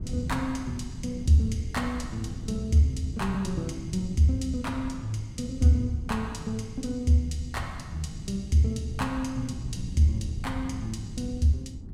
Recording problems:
wind noise; below 160 Hz, SNR 11 dB

